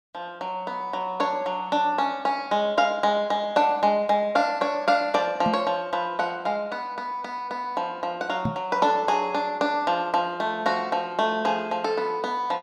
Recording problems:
microphone bump; at 5.5 s and at 8.5 s; peak +1 dB vs average level

